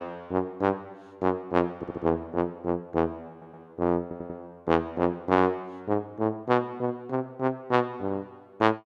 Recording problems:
stutter; at 2 s, at 3.5 s and at 4 s

